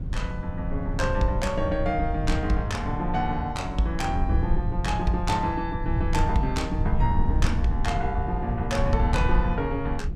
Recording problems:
low-frequency rumble; below 96 Hz, SNR 1 dB

